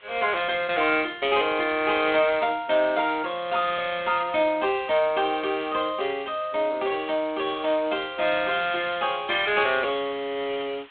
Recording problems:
telephone audio; 170 Hz to 3.9 kHz, G.726
background hiss; SNR 27 dB

